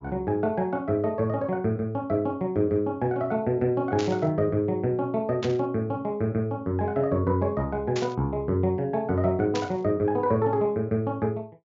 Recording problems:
treble cut off; nothing above 7.3 kHz
burst of static; 4 times, first at 4 s; peak -4 dB vs average level

